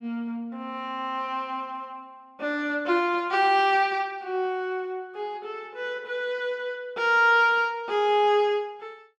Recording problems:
none

